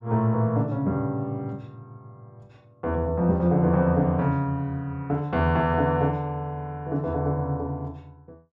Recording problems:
none

